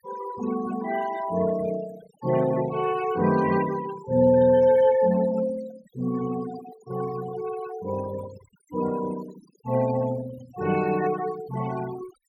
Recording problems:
denoising artefacts; signal-to-artefact ratio 15 dB

